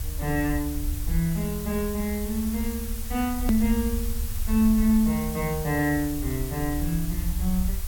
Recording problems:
background hiss; slope 0 dB per octave, SNR 11 dB
low-frequency rumble; below 70 Hz, SNR 6 dB
click at an edit; at 3.5 s

